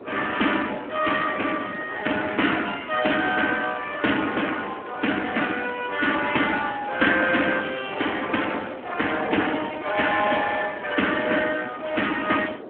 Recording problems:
phone line; 240 Hz to 3.3 kHz, Speex
wind noise; below 700 Hz, SNR 15 dB

